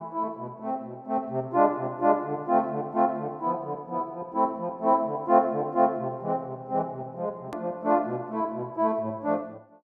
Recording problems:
hard cut with a click; at 7.5 s

